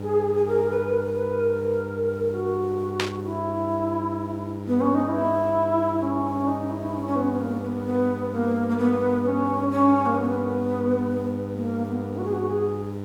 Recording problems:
hum; 50 Hz, harmonics up to 1 kHz, SNR 9 dB
background hiss; slope -7 dB per octave, SNR 23 dB
static burst; at 3 s; peak +3 dB vs average level

